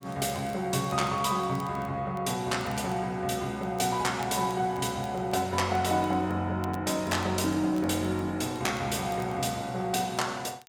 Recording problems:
crackling; vinyl, SNR 25 dB

